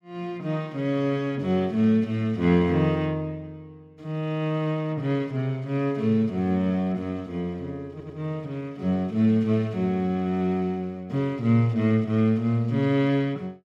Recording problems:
audio stuttering; at 8 s

